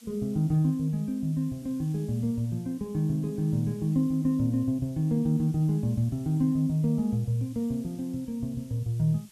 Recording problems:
background hiss; slope +1 dB per octave, SNR 27 dB

